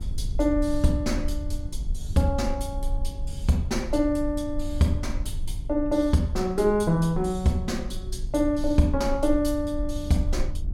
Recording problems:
mains hum; 50 Hz, harmonics up to 750 Hz, SNR 23 dB
rumble; below 58 Hz, SNR 8 dB

